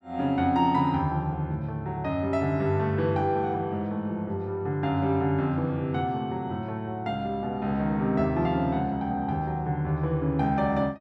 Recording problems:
none

